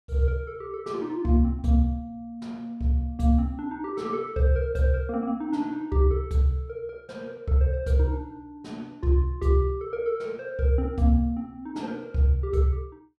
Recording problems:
none

